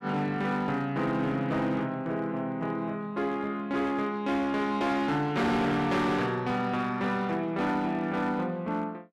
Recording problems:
distortion; hard clipping, signal-to-distortion ratio 11 dB

